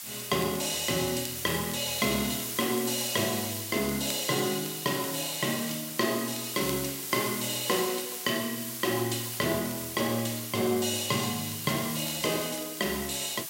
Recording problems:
background hiss; slope +3 dB per octave, SNR 5 dB
crackle; vinyl, SNR 20 dB

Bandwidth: 16 kHz